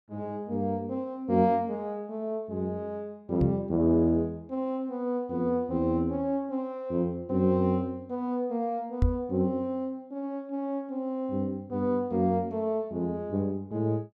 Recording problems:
microphone thump; at 3.5 s and at 9 s; peak +7 dB vs average level

